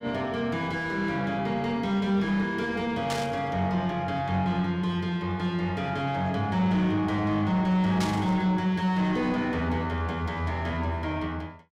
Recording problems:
distorted audio; soft clipping, signal-to-distortion ratio 10 dB
burst of static; at 3 s and at 8 s; peak -2 dB vs average level

